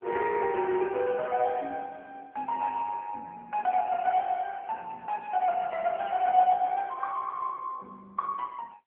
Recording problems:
phone line; 280 Hz to 3 kHz, AMR-NB

